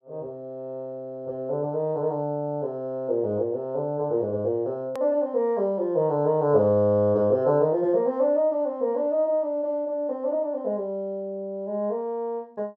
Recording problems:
edit click; at 5 s

